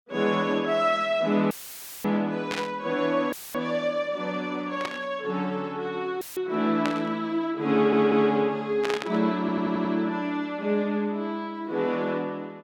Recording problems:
dropout; at 1.5 s for 0.5 s, at 3.5 s and at 6 s; filled with static
static burst; 4 times, first at 2.5 s; peak 0 dB vs average level
audio stuttering; at 7.5 s and at 9.5 s

